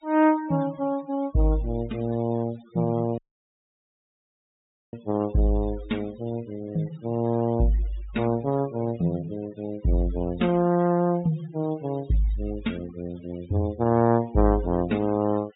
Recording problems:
low-pass filter; nothing above 4 kHz
denoising artefacts; signal-to-artefact ratio 21 dB
dropout; at 3 s for 1.5 s

